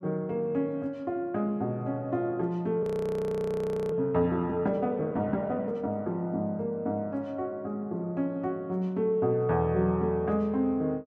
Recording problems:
audio freezing; at 3 s for 1 s

